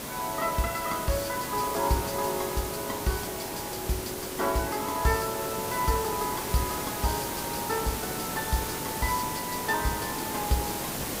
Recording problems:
hiss; slope -4 dB per octave, SNR 2 dB

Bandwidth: 15.5 kHz